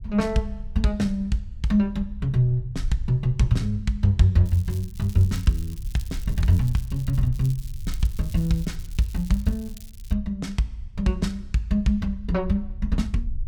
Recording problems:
low-frequency rumble; below 60 Hz, SNR 13 dB
crackling; from 4.5 to 10 s; loose cable, SNR 22 dB

